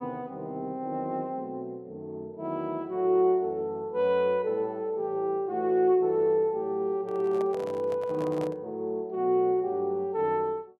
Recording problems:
handling noise; from 7 to 8.5 s; peak -8 dB vs average level

